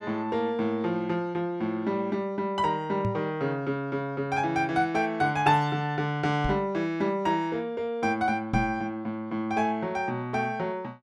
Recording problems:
microphone thump; at 3 s, at 6.5 s and at 8.5 s; peak +3 dB vs average level

